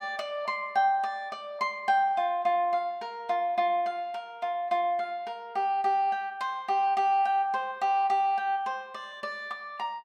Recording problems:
none

